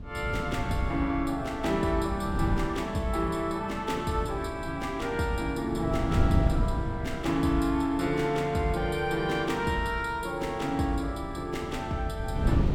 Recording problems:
wind noise; below 160 Hz, SNR 6 dB

